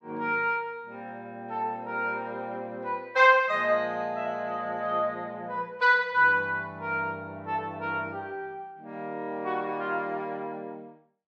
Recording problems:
none

